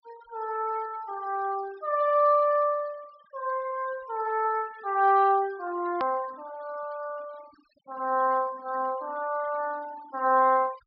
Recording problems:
low-pass filter; nothing above 5.4 kHz
noise reduction artefacts; signal-to-artefact ratio 25 dB
edit click; at 6 s

